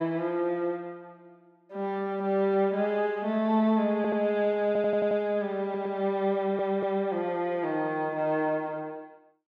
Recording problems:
audio stuttering; 4 times, first at 4 s

